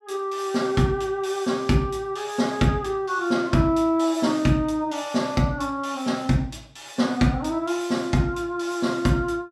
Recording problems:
none

